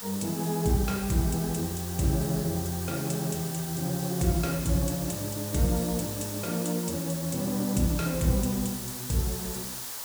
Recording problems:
background hiss; SNR 7 dB

